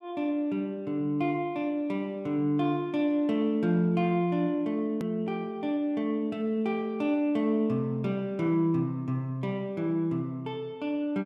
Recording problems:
edit click; at 5 s

